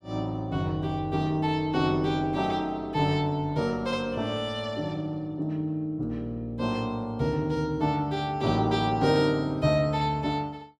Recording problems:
none

